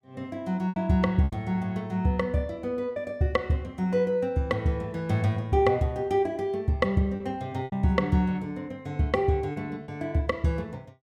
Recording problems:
packet loss; 4% of the sound replaced, filled with repeated pitch periods

